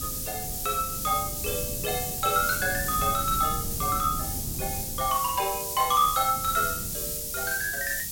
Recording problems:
background hiss; SNR 3 dB
wind noise; below 190 Hz, SNR 11 dB

